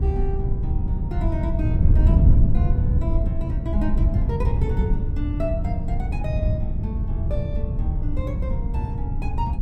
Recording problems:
wind on the microphone; below 100 Hz, SNR -9 dB

